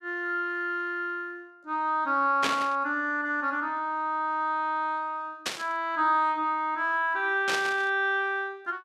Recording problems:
static burst; at 2.5 s, at 5.5 s and at 7.5 s; peak +4 dB vs average level

